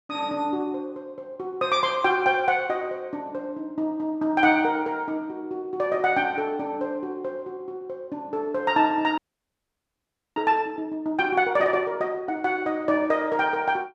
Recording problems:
frozen audio; at 9 s for 1 s

